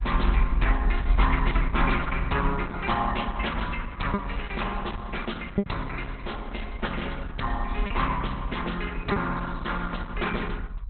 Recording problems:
lossy compression; Opus, log-spectral distance 2 dB, nothing above 4 kHz
low-frequency rumble; below 56 Hz, SNR 4 dB
packet loss; 1.9% of the sound replaced, filled with repeated pitch periods

